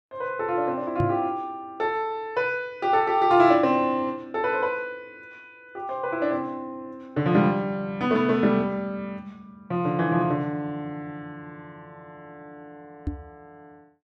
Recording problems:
microphone bump; at 1 s and at 13 s; peak 0 dB vs average level

